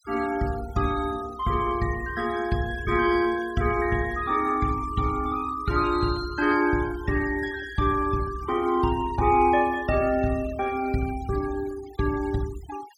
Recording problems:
noise reduction artefacts; signal-to-artefact ratio 18 dB

